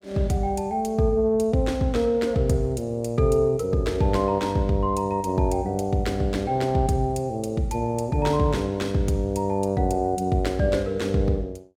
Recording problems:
none

